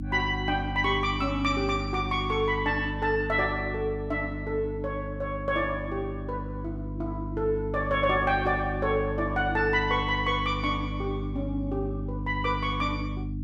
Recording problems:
electrical hum; 50 Hz, harmonics up to 300 Hz, SNR 6 dB

